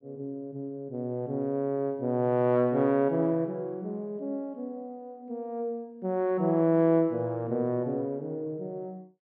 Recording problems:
none

